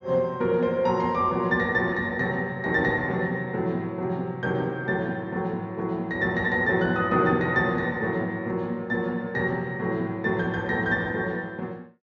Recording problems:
low-pass filter; nothing above 7 kHz

